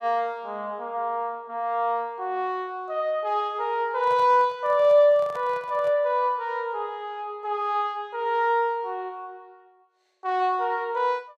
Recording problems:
handling noise; from 4 to 6 s; peak -12 dB vs average level

